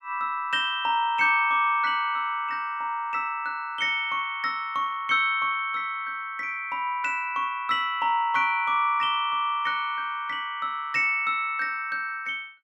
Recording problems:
none

